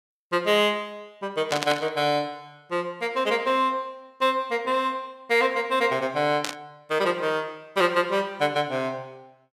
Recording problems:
burst of static; at 1.5 s and at 6.5 s; peak +1 dB vs average level

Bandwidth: 15.5 kHz